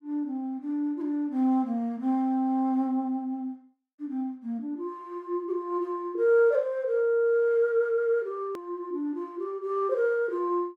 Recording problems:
edit click; at 8.5 s

